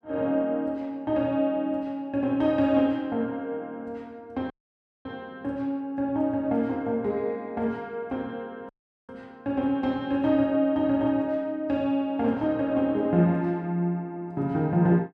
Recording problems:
audio cutting out; at 4.5 s for 0.5 s and at 8.5 s

